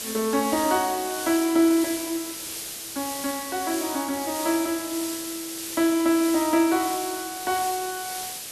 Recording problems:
hiss; SNR 7 dB

